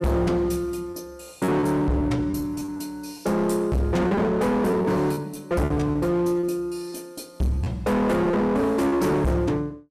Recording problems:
distorted audio; hard clipping, signal-to-distortion ratio 6 dB
lost packets; 9% of the sound replaced, filled with repeated pitch periods

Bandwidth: 15 kHz